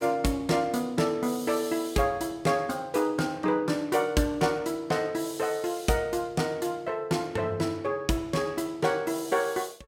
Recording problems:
none

